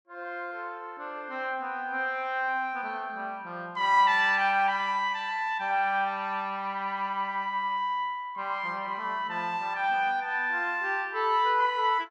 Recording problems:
none

